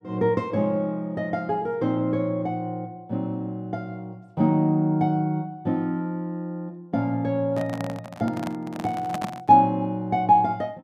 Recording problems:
handling noise; from 7.5 to 9.5 s; peak -2 dB vs average level

